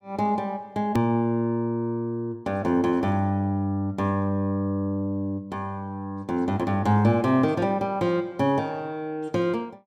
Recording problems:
click at an edit; at 1 s

